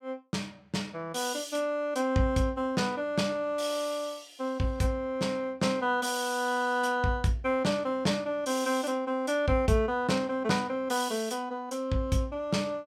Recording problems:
none

